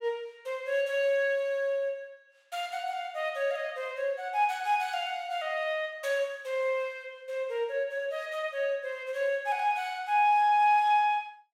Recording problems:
none

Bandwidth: 16 kHz